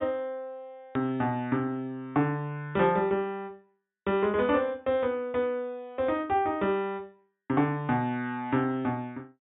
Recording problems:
low-pass filter; nothing above 4 kHz
click at an edit; at 1 s

